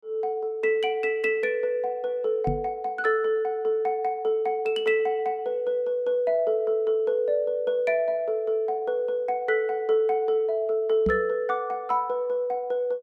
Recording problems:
microphone thump; at 2.5 s and at 11 s; peak +1 dB vs average level

